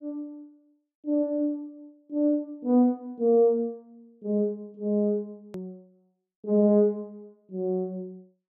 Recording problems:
hard cut with a click; at 5.5 s

